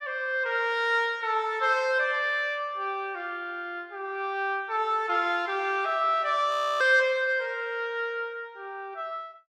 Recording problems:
frozen audio; at 6.5 s

